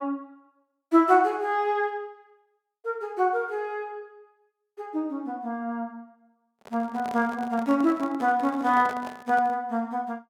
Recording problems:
microphone handling noise; from 6.5 to 9.5 s; peak -8 dB vs average level

